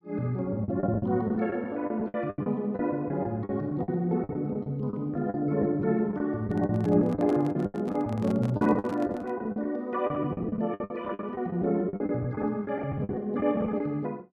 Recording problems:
packet loss; 15% of the sound replaced, filled with the last packet
microphone handling noise; from 6.5 to 9.5 s; peak -8 dB vs average level

